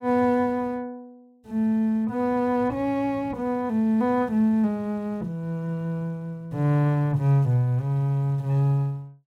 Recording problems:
none

